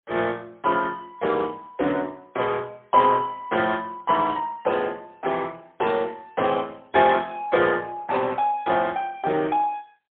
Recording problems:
phone line; 260 Hz to 3.5 kHz, AMR-NB, then MP3

